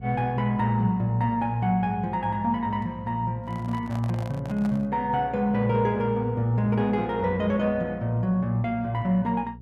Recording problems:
hum; 60 Hz, harmonics up to 480 Hz, SNR 19 dB
handling noise; from 3.5 to 5 s; peak -10 dB vs average level

